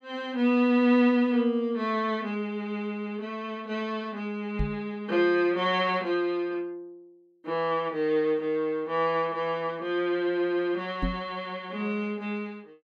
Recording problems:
microphone bump; at 4.5 s and at 11 s; peak +2 dB vs average level

